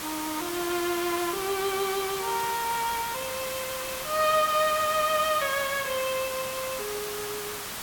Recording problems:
hiss; SNR 5 dB

